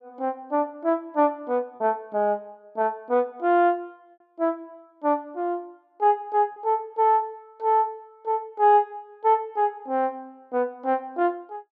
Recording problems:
lost packets; 0.9% of the sound replaced, filled with repeated pitch periods

